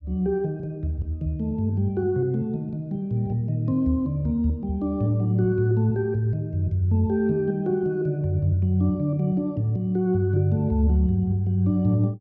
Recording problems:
none

